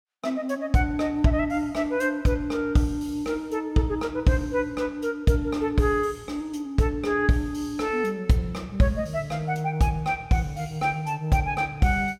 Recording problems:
none

